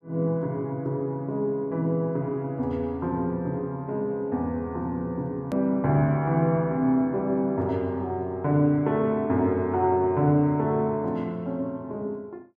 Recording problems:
hard cut with a click; at 5.5 s

